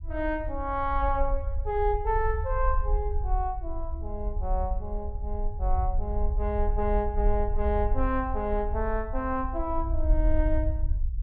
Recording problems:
treble cut off; nothing above 5.5 kHz
rumble; below 58 Hz, SNR 1 dB

